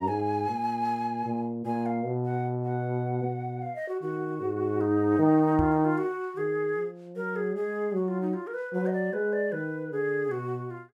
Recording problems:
knock on the microphone; at 5.5 s; peak +1 dB vs average level

